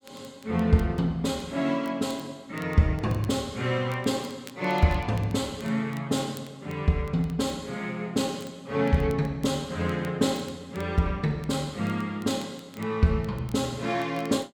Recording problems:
crackling; vinyl, SNR 25 dB

